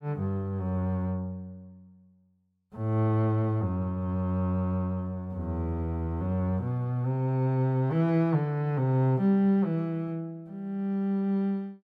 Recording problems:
none

